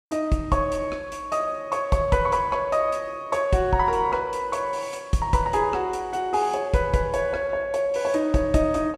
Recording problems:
none

